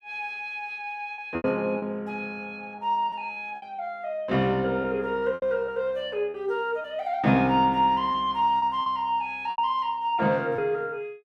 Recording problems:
lost packets; 6% of the sound replaced, filled with repeated pitch periods

